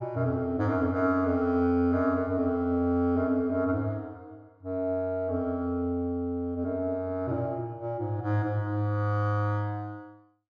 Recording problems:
none

